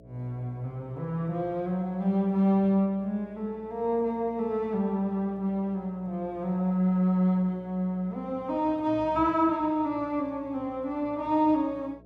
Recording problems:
hum; 60 Hz, harmonics up to 660 Hz, SNR 25 dB

